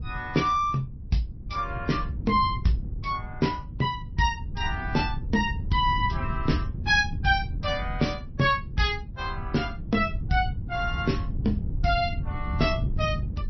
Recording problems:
codec artefacts; MP3, log-spectral distance 2 dB, nothing above 5.8 kHz
wind noise; below 120 Hz, SNR 6 dB

